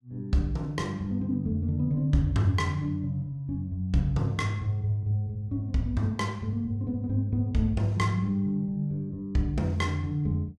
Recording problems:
none

